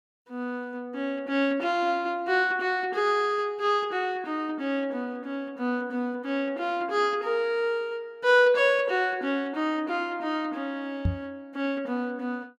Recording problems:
microphone bump; at 11 s; peak +4 dB vs average level

